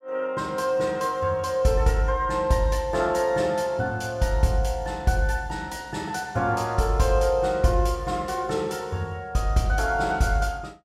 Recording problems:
none

